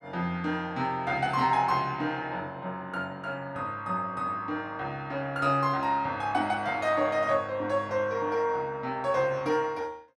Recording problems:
none

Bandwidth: 12.5 kHz